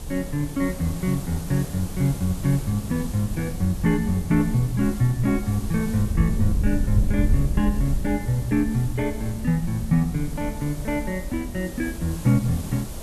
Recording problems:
hiss; SNR 16 dB
wind on the microphone; below 84 Hz, SNR 7 dB

